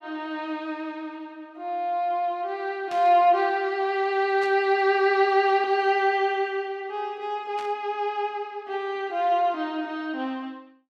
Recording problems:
burst of static; at 3 s, at 4.5 s and at 7.5 s; peak -12 dB vs average level

